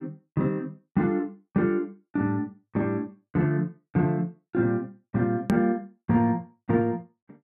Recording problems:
edit click; at 5.5 s

